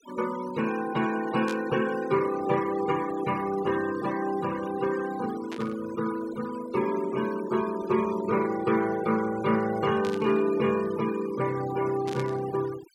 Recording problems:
noise reduction artefacts; signal-to-artefact ratio 15 dB
static burst; 4 times, first at 1.5 s; peak -8 dB vs average level

